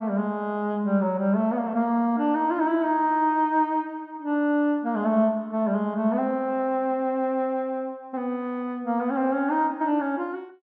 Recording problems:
none

